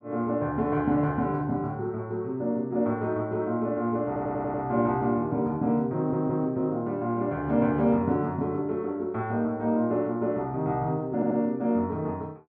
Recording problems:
stutter; at 4 s, at 6 s and at 11 s

